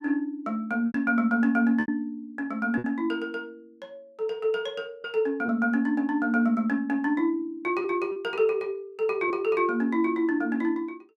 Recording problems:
packet loss; 3% of the sound replaced, filled with repeated pitch periods

